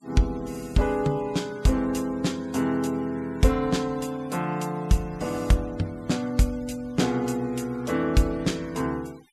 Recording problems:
noise reduction artefacts; signal-to-artefact ratio 24 dB

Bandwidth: 14 kHz